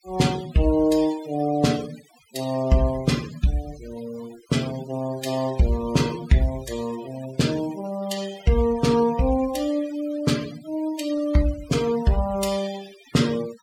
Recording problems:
denoising artefacts; signal-to-artefact ratio 17 dB

